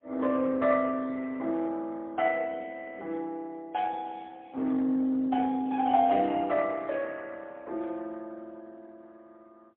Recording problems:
phone line; 220 Hz to 3.3 kHz, AMR-NB, then MP3

